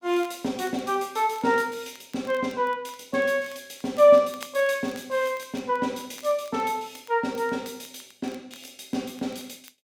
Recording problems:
crackle; vinyl, SNR 26 dB

